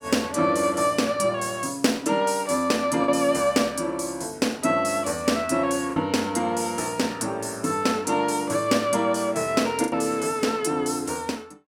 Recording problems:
packet loss; 1.4% of the sound replaced, filled with the last packet

